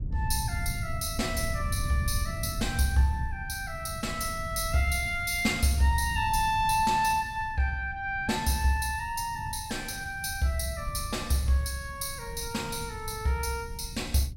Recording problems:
low-frequency rumble; below 120 Hz, SNR 10 dB

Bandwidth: 16.5 kHz